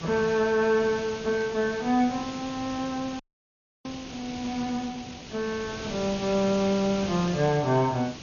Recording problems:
lossy compression; MP2, log-spectral distance 9 dB
hiss; SNR 12 dB
burst of static; at 1.5 s; peak -15 dB vs average level
frozen audio; at 3 s for 0.5 s

